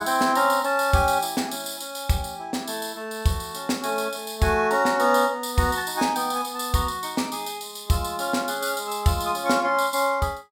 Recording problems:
none

